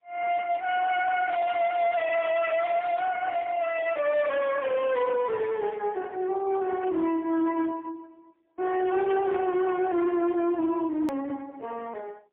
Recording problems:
telephone audio; 240 Hz to 3.5 kHz, AMR-NB, then MP3
distorted audio; hard clipping, uneven, signal-to-distortion ratio 11 dB
hard cut with a click; at 11 s

